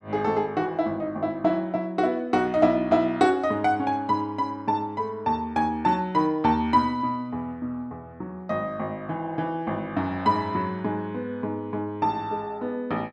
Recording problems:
none

